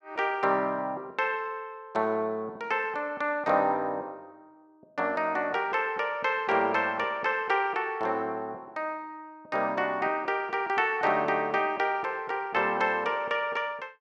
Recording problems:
none

